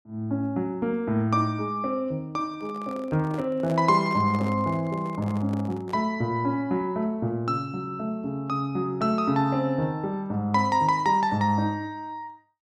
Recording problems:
handling noise; from 2.5 to 6 s; peak -7 dB vs average level

